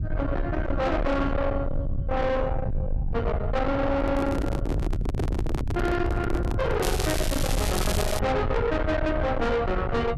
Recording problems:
distortion; soft clipping, signal-to-distortion ratio 6 dB
rumble; below 340 Hz, SNR 3 dB
microphone handling noise; from 4 to 7 s; peak 0 dB vs average level
crackling; from 7 to 8 s; loose cable, SNR 7 dB

